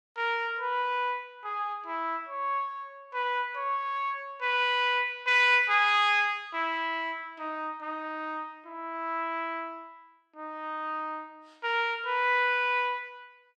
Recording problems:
none

